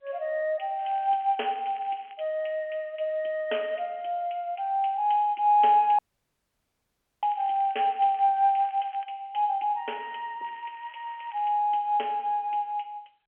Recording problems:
telephone audio; 340 Hz to 3.2 kHz, G.711
crackling; from 1 to 2 s, from 7 to 9 s and from 10 to 11 s; loose cable, SNR 27 dB
dropout; at 6 s for 1 s

